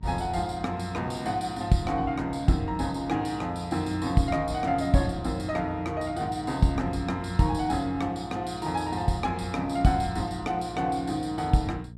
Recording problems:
mains hum; 60 Hz, harmonics up to 480 Hz, SNR 17 dB

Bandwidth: 14 kHz